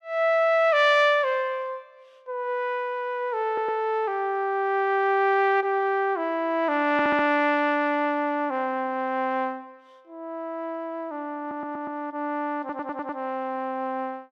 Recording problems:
audio stuttering; 4 times, first at 3.5 s

